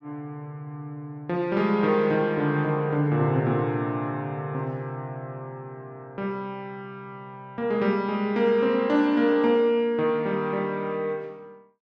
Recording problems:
none

